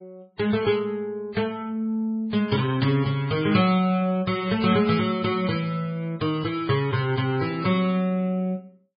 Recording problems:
lossy compression; MP3, then MP3, log-spectral distance 2 dB, nothing above 4.9 kHz

